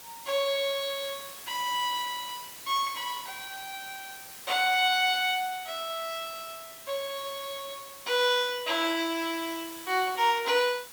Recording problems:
hiss; slope 0 dB per octave, SNR 14 dB

